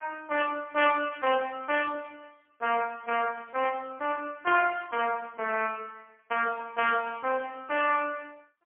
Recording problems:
telephone audio; 240 Hz to 3.2 kHz, AMR-NB, then MP3

